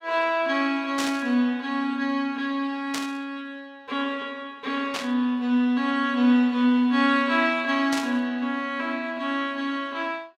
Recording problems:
burst of static; 4 times, first at 1 s; peak -2 dB vs average level

